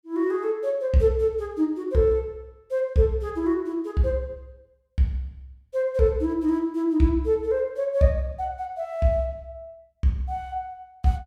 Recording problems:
none

